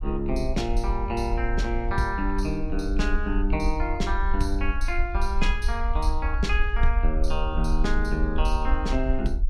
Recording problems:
rumble; below 54 Hz, SNR 0 dB

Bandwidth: 15.5 kHz